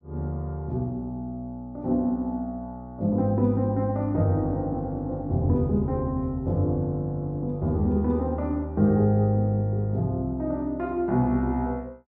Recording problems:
none

